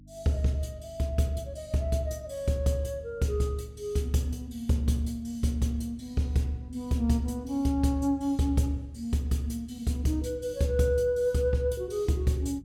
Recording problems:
mains hum; 50 Hz, harmonics up to 300 Hz, SNR 24 dB

